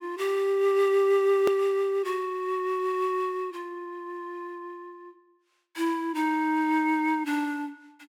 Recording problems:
hard cut with a click; at 1.5 s

